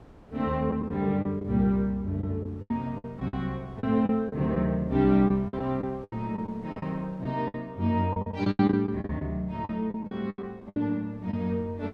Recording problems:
wind noise; below 560 Hz, SNR 24 dB
packet loss; 12% of the sound replaced, filled with the last packet

